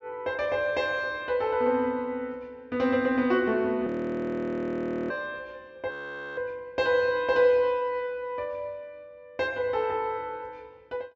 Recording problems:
treble cut off; nothing above 8 kHz
frozen audio; at 4 s for 1 s and at 6 s

